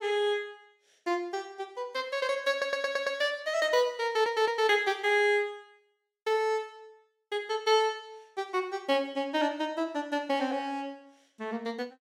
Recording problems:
audio stuttering; at 2.5 s and at 4 s

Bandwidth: 16.5 kHz